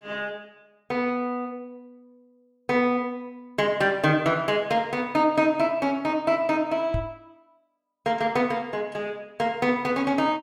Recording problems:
microphone thump; at 7 s; peak 0 dB vs average level

